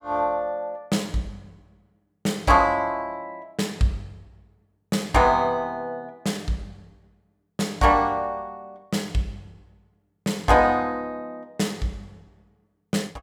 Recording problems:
none

